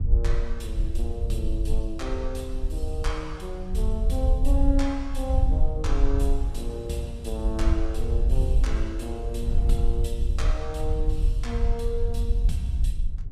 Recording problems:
low-frequency rumble; below 60 Hz, SNR -5 dB
wind noise; below 180 Hz, SNR 17 dB

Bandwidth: 15 kHz